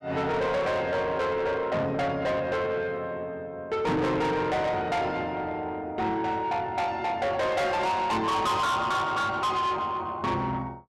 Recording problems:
distorted audio; soft clipping, signal-to-distortion ratio 7 dB

